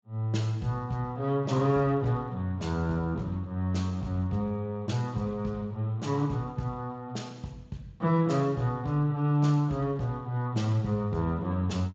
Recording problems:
codec artefacts; Speex, log-spectral distance 2 dB

